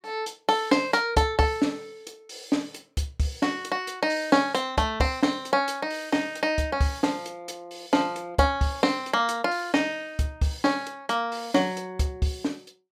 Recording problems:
none

